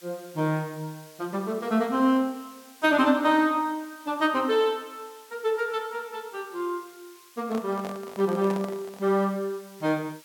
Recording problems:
background hiss; slope +3 dB per octave, SNR 24 dB
handling noise; from 7.5 to 9 s; peak -7 dB vs average level

